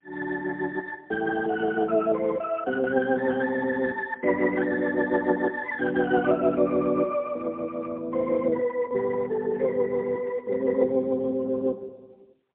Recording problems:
telephone audio; 280 Hz to 2.3 kHz, AMR-NB, then MP3

